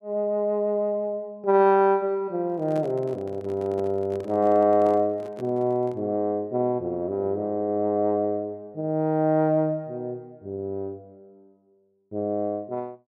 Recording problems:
microphone handling noise; from 2.5 to 6 s; peak -10 dB vs average level

